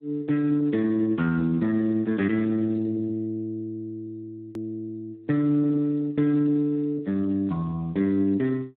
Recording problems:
phone line; 150 Hz to 2.6 kHz, Speex
click at an edit; at 4.5 s

